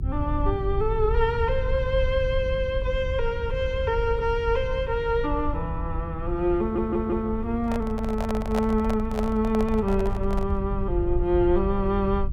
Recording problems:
hum; 50 Hz, harmonics up to 400 Hz, SNR 15 dB
rumble; below 78 Hz, SNR 6 dB
stutter; at 6.5 s
handling noise; from 7.5 to 11 s; peak -1 dB vs average level

